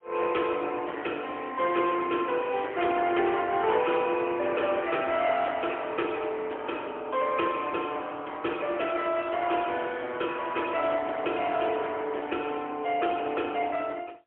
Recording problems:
phone line; 260 Hz to 3.3 kHz, AMR-NB, then MP3
distorted audio; hard clipping, uneven, signal-to-distortion ratio 12 dB
crackle; at 2.5 s; loose cable, SNR 25 dB

